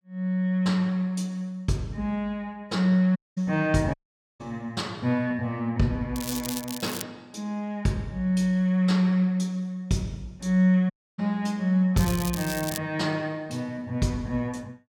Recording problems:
dropout; at 3 s, at 4 s and at 11 s
crackle; at 6 s and at 12 s; loose cable, SNR 9 dB

